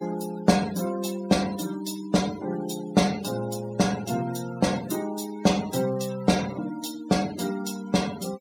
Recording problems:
noise reduction artefacts; signal-to-artefact ratio 15 dB

